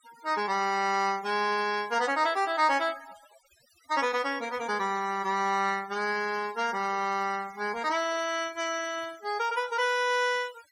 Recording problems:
denoising artefacts; signal-to-artefact ratio 19 dB

